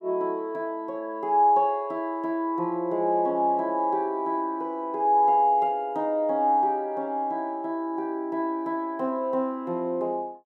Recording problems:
none

